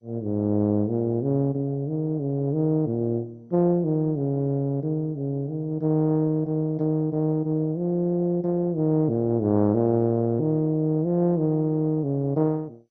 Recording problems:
lossy codec; MP2, log-spectral distance 2 dB

